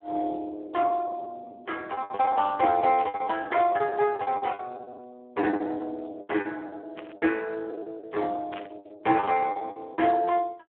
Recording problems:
phone line; 280 Hz to 2.9 kHz, Speex
lost packets; 15% of the sound replaced, filled with the last packet
static burst; 4 times, first at 3 s; peak -10 dB vs average level

